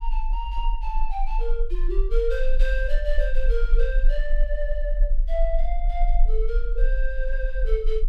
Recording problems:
rumble; below 36 Hz, strongest tone 22 Hz, SNR -5 dB

